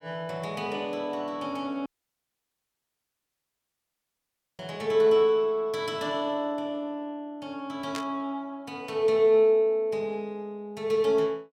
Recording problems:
dropout; at 2 s for 2.5 s
static burst; at 8 s; peak -5 dB vs average level

